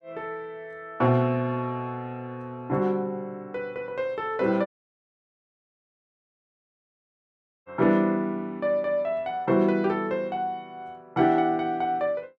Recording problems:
dropout; at 4.5 s for 3 s

